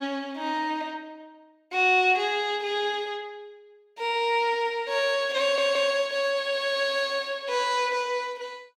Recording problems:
audio stuttering; at 5.5 s

